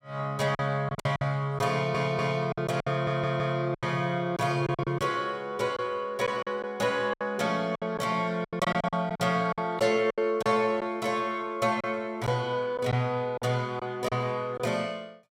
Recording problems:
packet loss; 10% of the sound replaced, filled with silence
stutter; at 1.5 s and at 3 s

